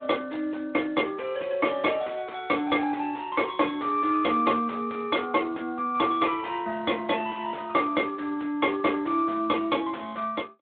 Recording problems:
phone line; 150 Hz to 3.4 kHz, Speex
distorted audio; soft clipping, signal-to-distortion ratio 9 dB

